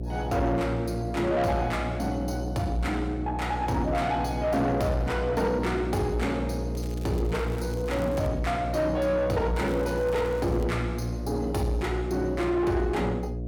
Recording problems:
distorted audio; soft clipping, signal-to-distortion ratio 11 dB
hum; 60 Hz, harmonics up to 660 Hz, SNR 6 dB
crackle; from 7 to 8.5 s and from 9.5 to 11 s; loose cable, SNR 23 dB

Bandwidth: 17.5 kHz